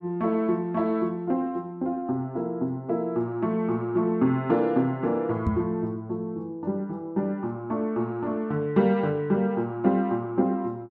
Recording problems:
microphone thump; at 5.5 s; peak +4 dB vs average level

